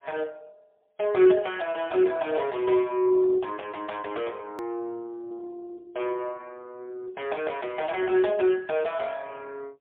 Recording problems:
telephone audio; 300 Hz to 3.5 kHz, AMR-NB, then MP3
hard cut with a click; at 4.5 s

